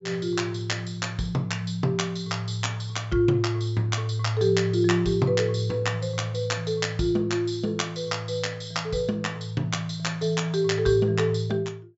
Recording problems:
treble missing; nothing above 8 kHz

